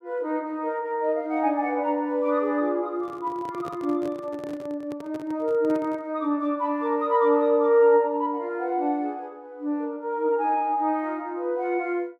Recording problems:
handling noise; from 3 to 6 s; peak -9 dB vs average level

